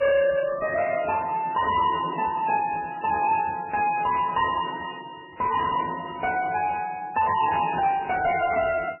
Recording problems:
codec artefacts; MP3, then MP3, log-spectral distance 4 dB, nothing above 2.7 kHz
distorted audio; soft clipping, signal-to-distortion ratio 10 dB

